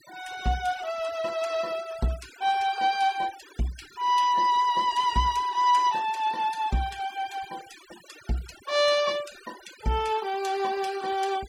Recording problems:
denoising artefacts; signal-to-artefact ratio 19 dB

